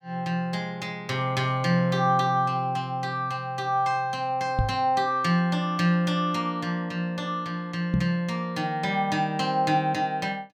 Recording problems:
microphone bump; at 4.5 s and at 8 s; peak +4 dB vs average level

